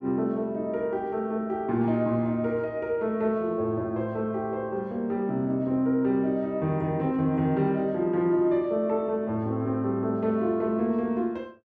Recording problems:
none

